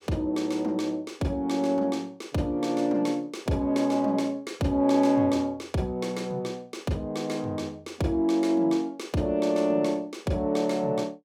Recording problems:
none

